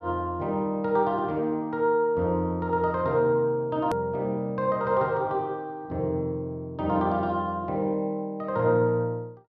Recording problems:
edit click; at 4 s

